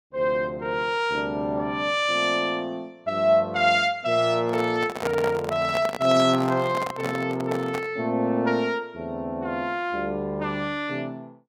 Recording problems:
handling noise; from 4.5 to 8 s; peak 0 dB vs average level

